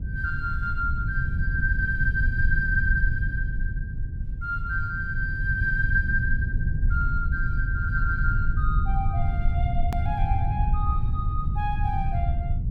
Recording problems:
rumble; below 94 Hz, SNR -2 dB
edit click; at 10 s

